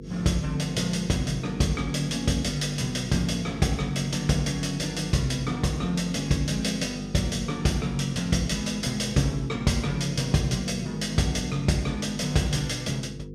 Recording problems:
electrical hum; 50 Hz, harmonics up to 500 Hz, SNR 13 dB

